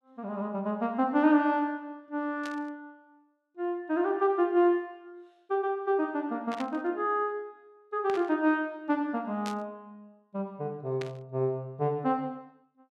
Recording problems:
static burst; 5 times, first at 2.5 s; peak -7 dB vs average level

